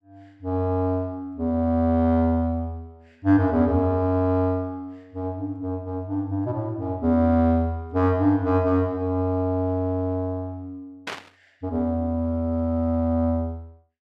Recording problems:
burst of static; at 11 s; peak -4 dB vs average level

